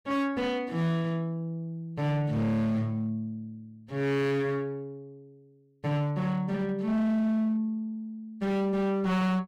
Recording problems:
distorted audio; hard clipping, signal-to-distortion ratio 10 dB

